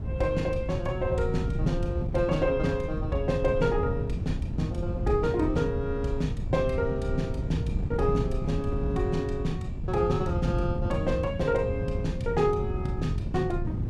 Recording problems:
wind noise; below 160 Hz, SNR 3 dB

